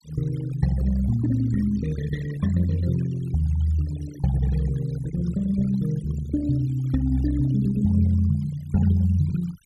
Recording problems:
noise reduction artefacts; signal-to-artefact ratio 18 dB

